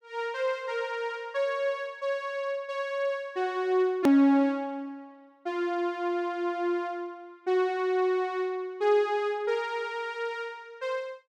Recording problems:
click at an edit; at 4 s

